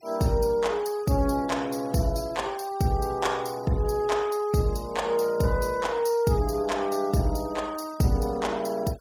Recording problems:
noise reduction artefacts; signal-to-artefact ratio 23 dB

